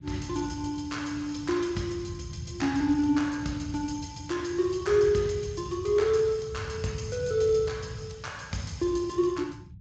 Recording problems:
lossy compression; Speex, log-spectral distance 4 dB, nothing above 18.3 kHz
rumble; below 150 Hz, SNR 13 dB

